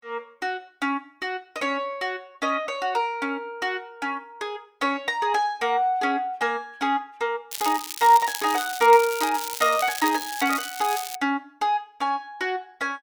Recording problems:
crackle; from 7.5 to 11 s; loose cable, SNR 8 dB

